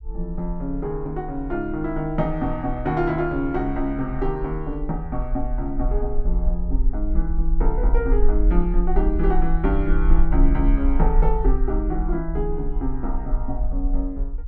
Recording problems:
rumble; below 44 Hz, SNR 0 dB

